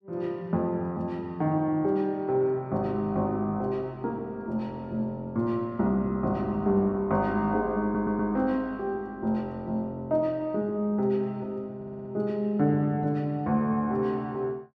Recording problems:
audio stuttering; at 8 s and at 12 s

